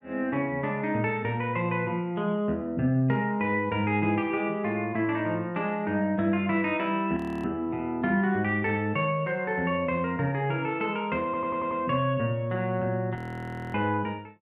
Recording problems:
frozen audio; at 7 s and at 13 s for 0.5 s
stutter; at 11 s

